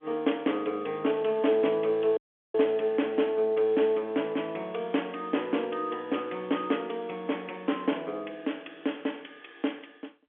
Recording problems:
telephone audio; 220 Hz to 3.4 kHz, G.711
audio cutting out; at 2 s

